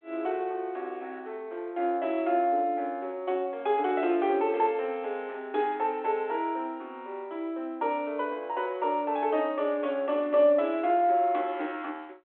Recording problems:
telephone audio; 260 Hz to 3.6 kHz, G.726

